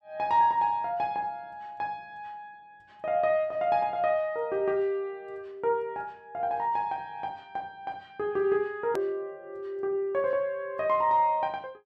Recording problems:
hard cut with a click; at 9 s

